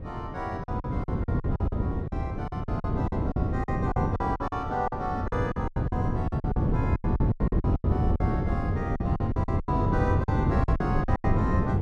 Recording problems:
wind noise; below 240 Hz, SNR -6 dB
lost packets; 17% of the sound replaced, filled with silence

